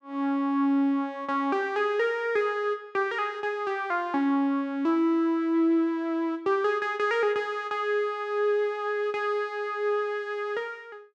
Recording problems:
none

